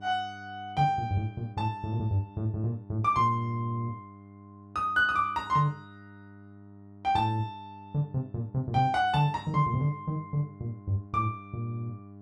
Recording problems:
hum; 50 Hz, harmonics up to 1 kHz, SNR 20 dB

